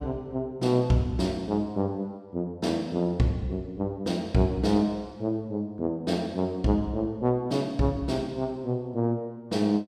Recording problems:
none

